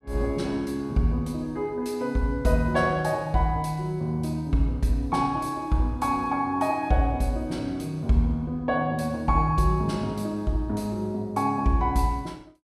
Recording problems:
none

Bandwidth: 14.5 kHz